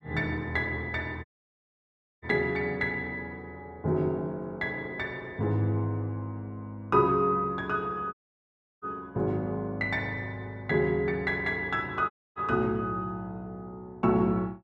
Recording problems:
dropout; at 1.5 s for 1 s, at 8 s for 0.5 s and at 12 s

